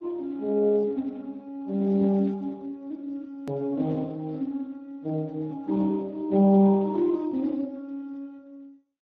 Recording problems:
lossy codec; MP2, then Speex, log-spectral distance 2 dB, nothing above 13.1 kHz
edit click; at 3.5 s

